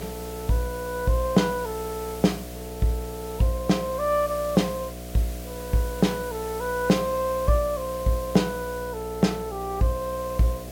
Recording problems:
electrical hum; 60 Hz, harmonics up to 720 Hz, SNR 12 dB
hiss; slope -1 dB per octave, SNR 16 dB

